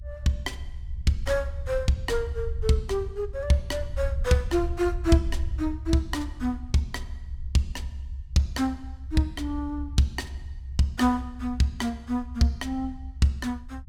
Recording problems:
low-frequency rumble; below 70 Hz, SNR 8 dB

